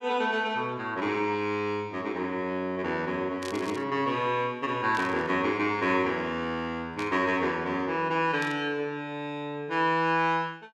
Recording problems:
static burst; 4 times, first at 3.5 s; peak -7 dB vs average level

